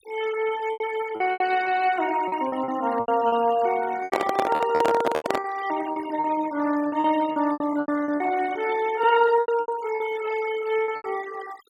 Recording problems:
denoising artefacts; signal-to-artefact ratio 16 dB
lost packets; 13% of the sound replaced, filled with repeated pitch periods
handling noise; from 4 to 5.5 s; peak +3 dB vs average level

